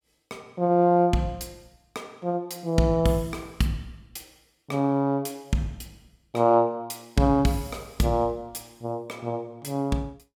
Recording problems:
none

